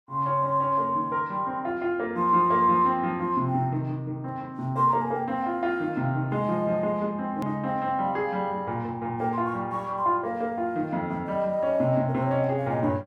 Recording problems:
edit click; at 7.5 s

